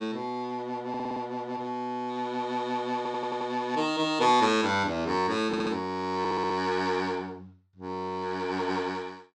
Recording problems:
audio stuttering; 4 times, first at 1 s

